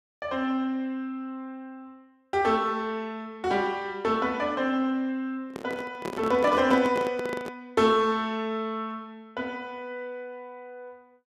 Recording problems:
microphone handling noise; from 5.5 to 7.5 s; peak -1 dB vs average level

